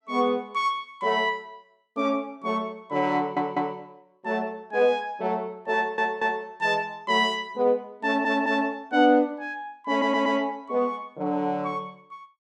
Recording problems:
audio stuttering; 4 times, first at 3 s

